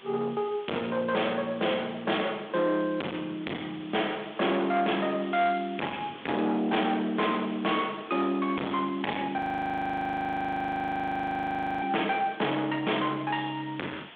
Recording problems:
phone line; 220 Hz to 3.5 kHz, G.726
distorted audio; soft clipping, signal-to-distortion ratio 6 dB
background hiss; SNR 19 dB
audio freezing; at 9.5 s for 2.5 s

